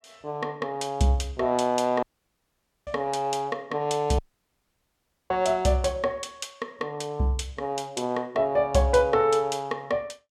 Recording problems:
dropout; at 2 s for 1 s and at 4 s for 1 s

